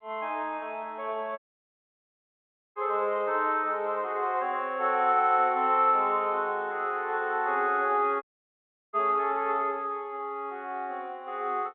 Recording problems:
phone line; 320 Hz to 3.9 kHz, G.711
audio cutting out; at 1.5 s for 1.5 s and at 8 s for 0.5 s

